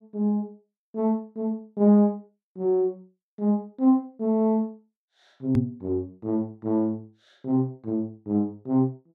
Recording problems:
knock on the microphone; at 5.5 s; peak +5 dB vs average level

